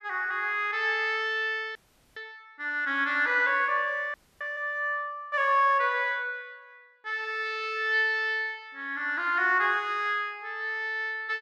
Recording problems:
audio freezing; at 2 s and at 4 s

